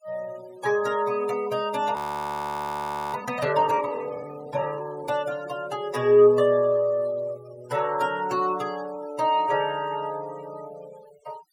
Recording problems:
noise reduction artefacts; signal-to-artefact ratio 21 dB
audio freezing; at 2 s for 1 s

